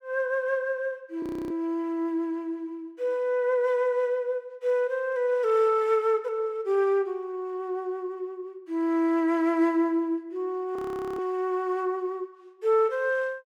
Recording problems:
audio freezing; at 1 s and at 11 s

